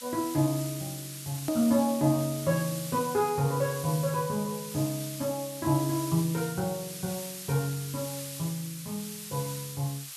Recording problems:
hiss; slope +4 dB per octave, SNR 9 dB
click at an edit; at 1.5 s

